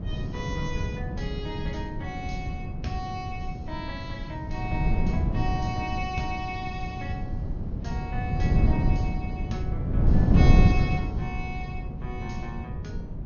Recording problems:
treble cut off; nothing above 6.6 kHz
wind on the microphone; below 160 Hz, SNR -7 dB

